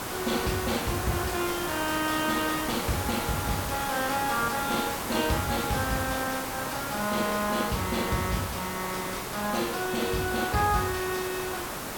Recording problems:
hiss; SNR 3 dB

